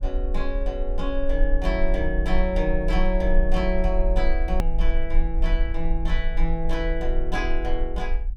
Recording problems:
low-frequency rumble; below 40 Hz, strongest tone 20 Hz, SNR -1 dB
click at an edit; at 4.5 s

